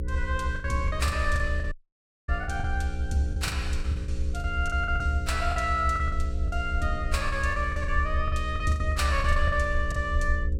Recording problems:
mains hum; 60 Hz, harmonics up to 540 Hz, SNR 7 dB
low-frequency rumble; below 74 Hz, SNR 2 dB
lost packets; 14% of the sound replaced, filled with the last packet
audio cutting out; at 1.5 s for 0.5 s

